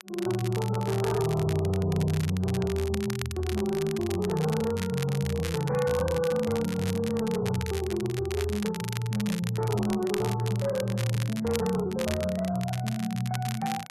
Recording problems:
lossy codec; MP3, log-spectral distance 2 dB, nothing above 11.3 kHz
distortion; hard clipping, signal-to-distortion ratio 12 dB
crackling; vinyl, SNR 12 dB

